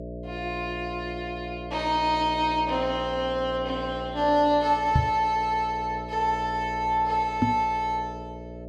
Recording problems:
hum; 60 Hz, harmonics up to 660 Hz, SNR 12 dB
microphone thump; at 5 s and at 7.5 s; peak +7 dB vs average level

